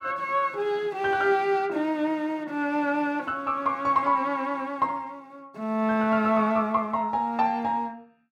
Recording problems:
none

